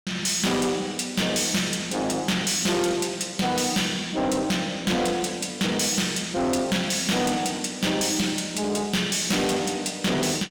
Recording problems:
distorted audio; soft clipping, signal-to-distortion ratio 7 dB

